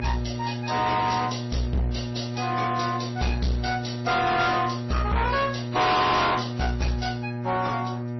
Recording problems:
lossy codec; MP3, then AAC, log-spectral distance 5 dB, nothing above 5.8 kHz
distortion; hard clipping, uneven, signal-to-distortion ratio 5 dB
hum; 60 Hz, harmonics up to 1.6 kHz, SNR 6 dB

